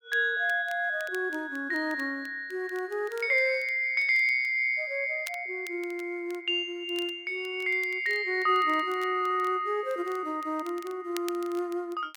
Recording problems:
crackle; vinyl, SNR 23 dB

